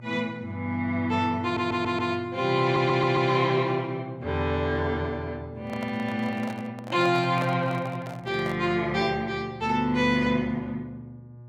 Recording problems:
electrical hum; 60 Hz, harmonics up to 840 Hz, SNR 18 dB
audio stuttering; at 1.5 s and at 2.5 s
handling noise; from 5.5 to 8.5 s; peak -6 dB vs average level

